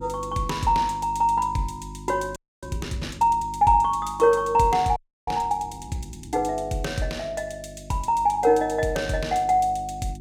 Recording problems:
hum; 50 Hz, harmonics up to 350 Hz, SNR 18 dB
audio freezing; at 2.5 s and at 5 s

